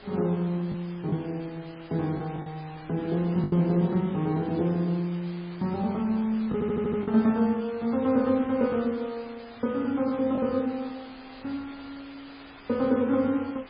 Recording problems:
lossy codec; MP3, then MP3, log-spectral distance 6 dB
background hiss; SNR 21 dB
wind noise; below 2.5 kHz, SNR 26 dB
packet loss; 2% of the sound replaced, filled with the last packet
audio stuttering; at 6.5 s

